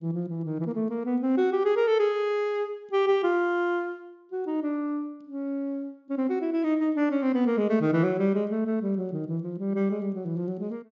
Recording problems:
low-pass filter; nothing above 7.3 kHz

